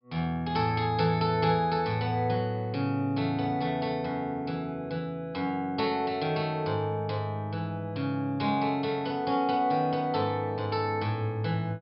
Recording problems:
treble missing; nothing above 5.3 kHz

